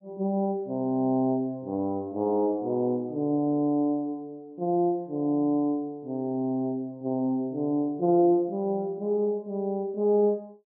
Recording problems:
none

